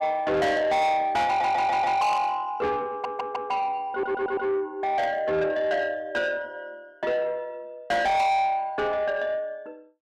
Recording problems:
distortion; soft clipping, signal-to-distortion ratio 7 dB
stutter; at 1.5 s, at 3 s and at 4 s
static burst; at 2 s, at 5 s and at 8 s; peak -13 dB vs average level

